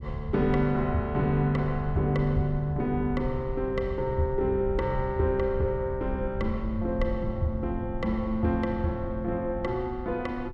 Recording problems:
low-frequency rumble; below 86 Hz, SNR 9 dB

